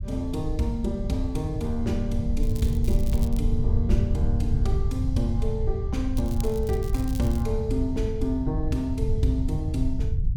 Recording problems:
rumble; below 96 Hz, SNR -1 dB
crackle; at 2.5 s and from 6 to 7.5 s; loose cable, SNR 16 dB

